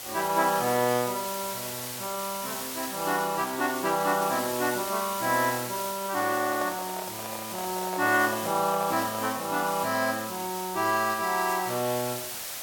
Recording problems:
hiss; SNR 7 dB
microphone handling noise; from 6 to 9.5 s; peak -5 dB vs average level

